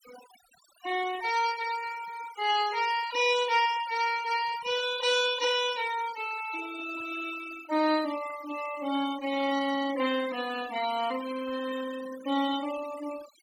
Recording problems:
noise reduction artefacts; signal-to-artefact ratio 14 dB

